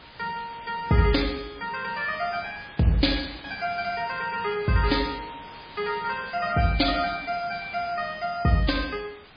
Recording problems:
codec artefacts; MP3, log-spectral distance 12 dB
background hiss; SNR 18 dB

